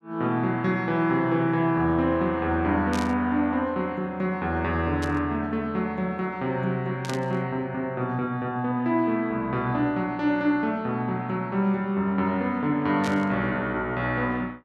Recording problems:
burst of static; 4 times, first at 3 s; peak -6 dB vs average level

